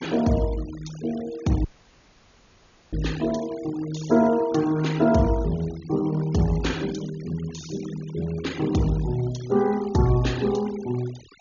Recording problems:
treble cut off; nothing above 7 kHz
noise reduction artefacts; signal-to-artefact ratio 19 dB
audio cutting out; at 1.5 s for 1.5 s

